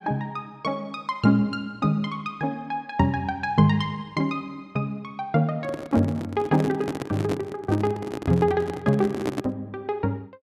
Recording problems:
handling noise; from 5.5 to 9.5 s; peak +2 dB vs average level

